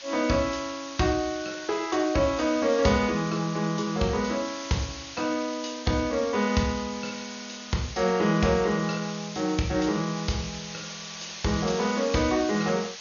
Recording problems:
lossy codec; MP2, log-spectral distance 17 dB, nothing above 6.7 kHz
background hiss; slope +2 dB per octave, SNR 12 dB
crackle; from 1 to 2 s; loose cable, SNR 28 dB

